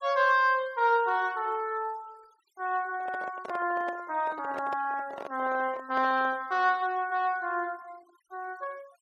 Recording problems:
noise reduction artefacts; signal-to-artefact ratio 26 dB
handling noise; from 3 to 6.5 s; peak -6 dB vs average level

